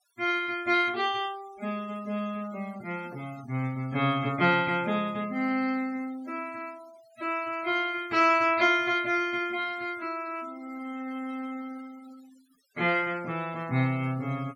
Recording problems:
denoising artefacts; signal-to-artefact ratio 23 dB

